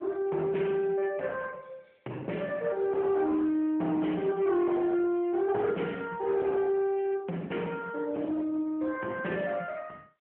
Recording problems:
phone line; 220 Hz to 3 kHz, AMR-NB
distortion; hard clipping, signal-to-distortion ratio 11 dB

